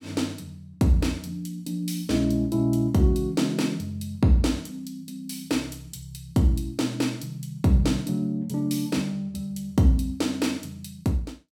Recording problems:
none

